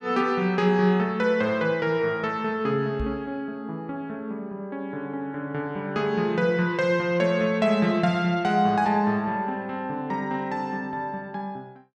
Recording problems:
microphone thump; at 3 s; peak -2 dB vs average level

